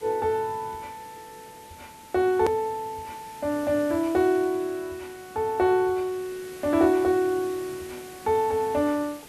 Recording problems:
background hiss; SNR 20 dB
click at an edit; at 2.5 s

